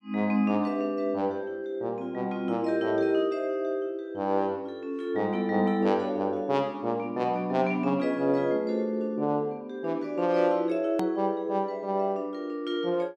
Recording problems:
hard cut with a click; at 11 s

